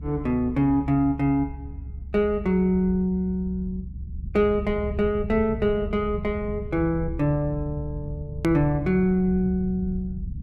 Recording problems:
rumble; below 110 Hz, SNR 11 dB
hard cut with a click; at 8.5 s

